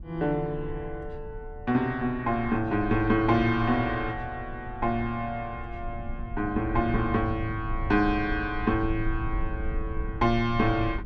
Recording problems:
rumble; below 76 Hz, SNR 10 dB

